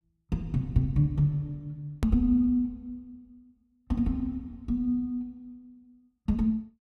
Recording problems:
click at an edit; at 2 s

